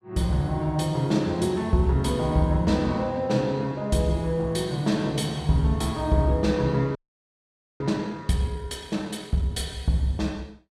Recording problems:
audio freezing; at 7 s for 1 s

